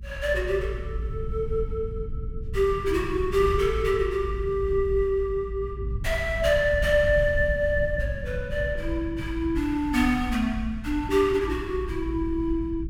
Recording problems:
low-frequency rumble; below 88 Hz, SNR 8 dB

